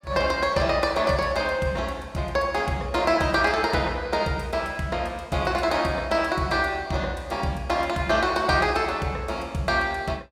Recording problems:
none

